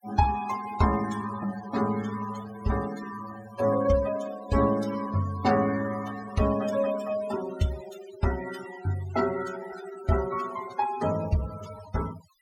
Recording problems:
noise reduction artefacts; signal-to-artefact ratio 13 dB

